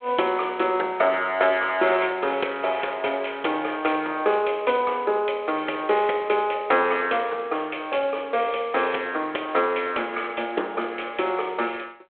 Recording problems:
phone line; 320 Hz to 3.5 kHz, G.726

